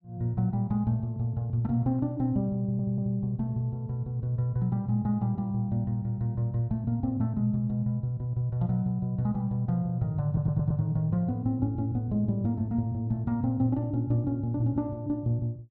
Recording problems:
stutter; at 2.5 s and at 10 s

